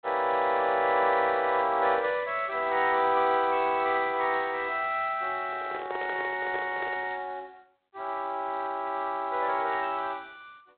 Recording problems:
telephone audio; 280 Hz to 3.9 kHz, G.726
microphone handling noise; from 5.5 to 7 s; peak -7 dB vs average level

